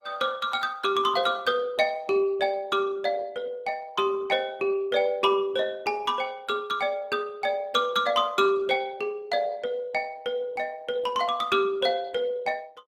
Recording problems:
lossy codec; Opus, log-spectral distance 3 dB, nothing above 18.3 kHz

